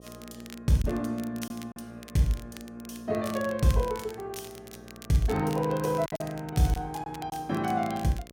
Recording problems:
hum; 60 Hz, harmonics up to 1.2 kHz, SNR 22 dB
crackle; vinyl, SNR 19 dB
lost packets; 3% of the sound replaced, filled with silence

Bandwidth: 16.5 kHz